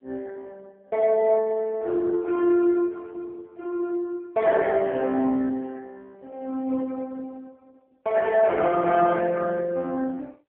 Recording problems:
phone line; 220 Hz to 2.2 kHz, AMR-NB

